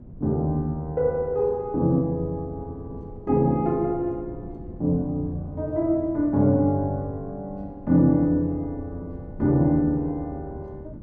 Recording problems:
wind on the microphone; below 210 Hz, SNR 18 dB

